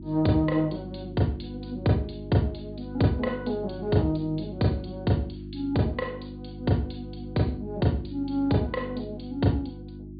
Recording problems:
low-pass filter; nothing above 4.7 kHz
hum; 50 Hz, harmonics up to 350 Hz, SNR 11 dB

